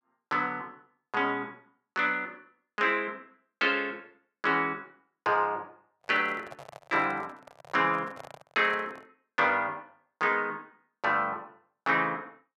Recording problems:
microphone handling noise; from 6 to 9 s; peak -11 dB vs average level

